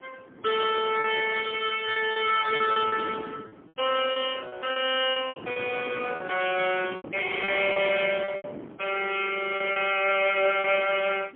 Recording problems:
telephone audio; 300 Hz to 3.3 kHz, AMR-NB, then MP3
wind noise; below 500 Hz, SNR 18 dB
lost packets; 9% of the sound replaced, filled with repeated pitch periods

